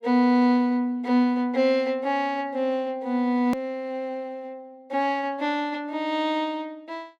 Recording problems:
edit click; at 3.5 s

